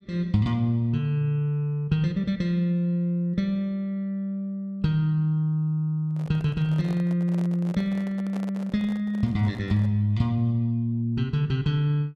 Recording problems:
handling noise; from 6 to 10 s; peak -10 dB vs average level

